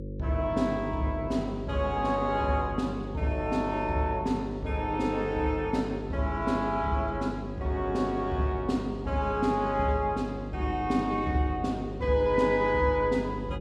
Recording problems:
hum; 50 Hz, harmonics up to 550 Hz, SNR 10 dB

